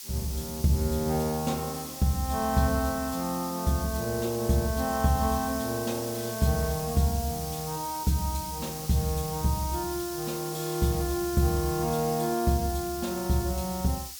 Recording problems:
background hiss; slope +6 dB per octave, SNR 9 dB

